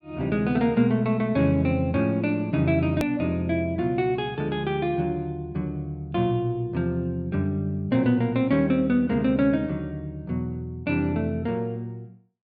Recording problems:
low-pass filter; nothing above 4.8 kHz
edit click; at 3 s

